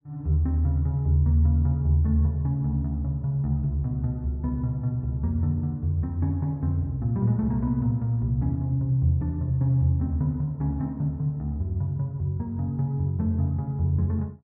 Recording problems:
none

